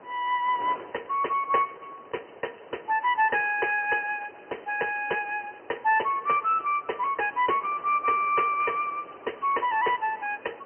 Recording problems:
phone line; 300 Hz to 3.1 kHz, Speex
wind on the microphone; below 1.1 kHz, SNR 20 dB

